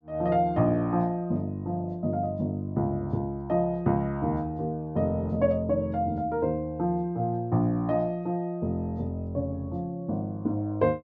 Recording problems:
none

